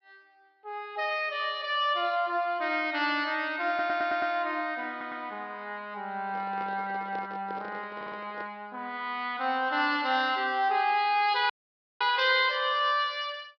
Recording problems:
low-pass filter; nothing above 5.5 kHz
stutter; at 3.5 s, at 5 s and at 8 s
handling noise; from 6.5 to 8.5 s; peak -10 dB vs average level
audio cutting out; at 12 s for 0.5 s

